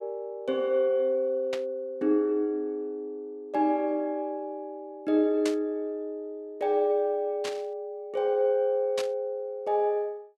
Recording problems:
burst of static; 4 times, first at 1.5 s; peak -3 dB vs average level

